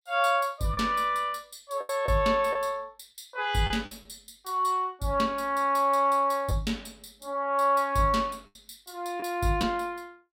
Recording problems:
packet loss; 4% of the sound replaced, filled with the last packet

